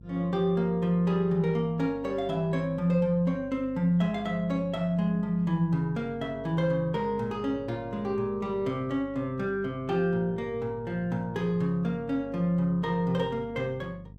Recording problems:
hum; 50 Hz, harmonics up to 500 Hz, SNR 20 dB

